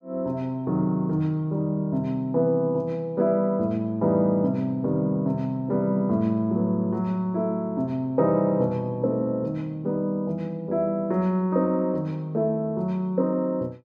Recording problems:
none

